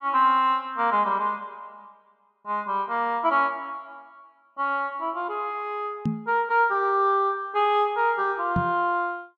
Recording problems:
microphone thump; at 6 s and at 8.5 s; peak +2 dB vs average level

